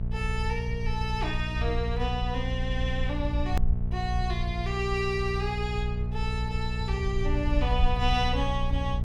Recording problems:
mains hum; 60 Hz, harmonics up to 660 Hz, SNR 1 dB
low-frequency rumble; below 66 Hz, SNR 2 dB
edit click; at 3.5 s

